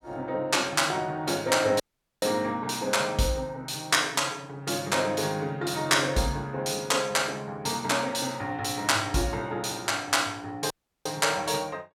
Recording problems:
audio cutting out; at 2 s and at 11 s

